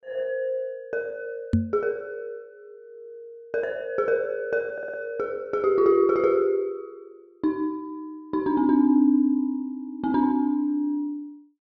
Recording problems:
microphone bump; at 1.5 s; peak +7 dB vs average level
audio stuttering; at 4.5 s

